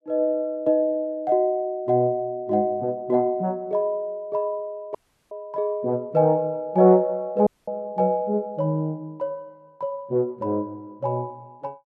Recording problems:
audio cutting out; at 5 s and at 7.5 s

